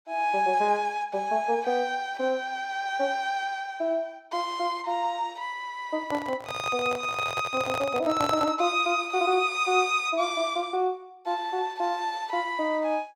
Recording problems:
microphone handling noise; from 6 to 8.5 s; peak +1 dB vs average level

